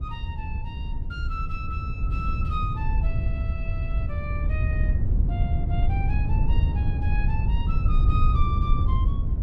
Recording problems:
wind noise; below 90 Hz, SNR -10 dB

